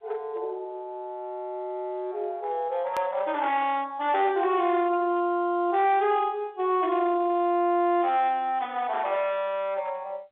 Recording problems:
phone line; 320 Hz to 3.9 kHz, G.711
distortion; hard clipping, signal-to-distortion ratio 12 dB
edit click; at 3 s

